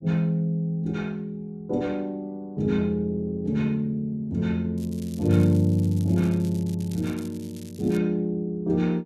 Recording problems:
crackling; from 5 to 8 s; loose cable, SNR 22 dB

